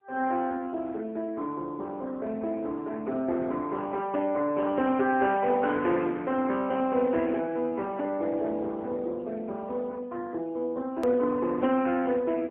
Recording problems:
telephone audio; 220 Hz to 3.2 kHz, AMR-NB, then MP3
edit click; at 11 s

